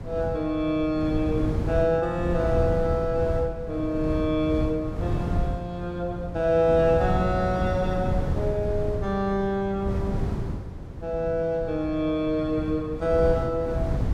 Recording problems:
wind noise; below 180 Hz, SNR 5 dB

